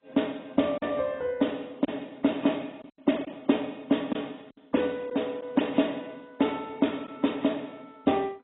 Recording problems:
lossy codec; AAC, then MP2, log-spectral distance 4 dB, nothing above 3.8 kHz
packet loss; 3% of the sound replaced, filled with silence

